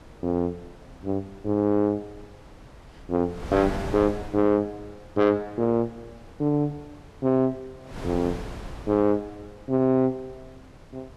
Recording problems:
distortion; soft clipping, signal-to-distortion ratio 10 dB
wind on the microphone; below 570 Hz, SNR 17 dB

